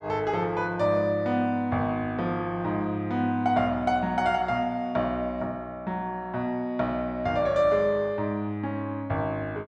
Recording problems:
none

